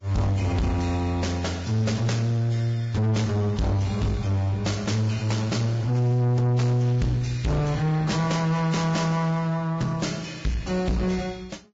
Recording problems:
lossy compression; Vorbis, log-spectral distance 3 dB, nothing above 7.3 kHz
distortion; soft clipping, signal-to-distortion ratio 7 dB

